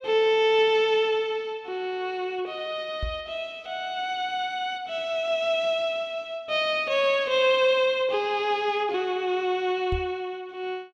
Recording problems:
knock on the microphone; at 3 s and at 10 s; peak -2 dB vs average level

